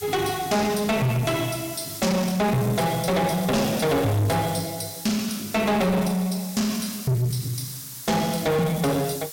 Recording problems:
distortion; soft clipping, signal-to-distortion ratio 6 dB
background hiss; SNR 12 dB

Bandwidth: 16.5 kHz